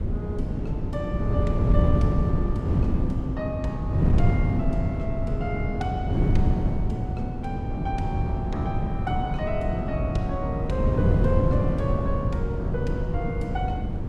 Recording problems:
wind noise; below 180 Hz, SNR -6 dB

